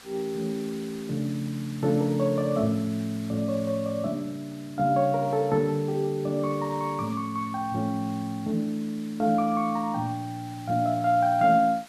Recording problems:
background hiss; slope 0 dB per octave, SNR 21 dB

